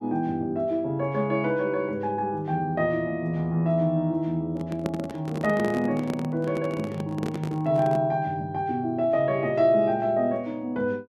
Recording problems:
handling noise; from 4.5 to 8 s; peak -1 dB vs average level

